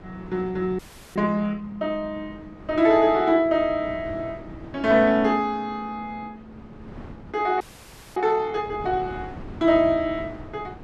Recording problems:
wind on the microphone; below 400 Hz, SNR 18 dB
frozen audio; at 1 s and at 7.5 s for 0.5 s

